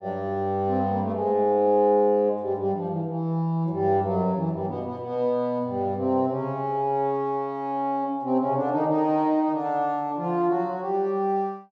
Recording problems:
none

